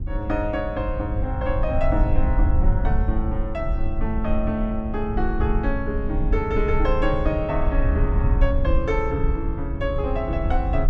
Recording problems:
rumble; below 72 Hz, SNR -1 dB

